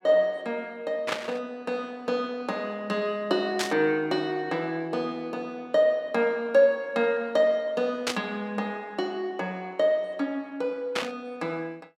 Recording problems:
burst of static; 4 times, first at 1 s; peak +4 dB vs average level

